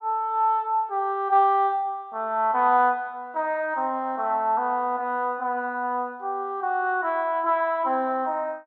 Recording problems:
none

